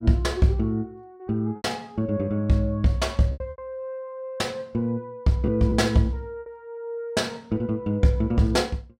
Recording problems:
packet loss; 4% of the sound replaced, filled with repeated pitch periods

